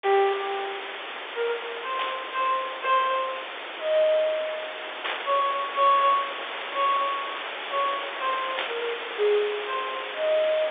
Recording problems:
telephone audio; 300 Hz to 3.7 kHz, G.711
hiss; SNR 7 dB
burst of static; at 2 s, at 5 s and at 8.5 s; peak +1 dB vs average level

